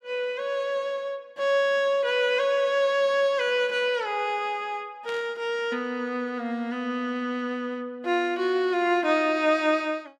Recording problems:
static burst; at 5 s; peak -12 dB vs average level

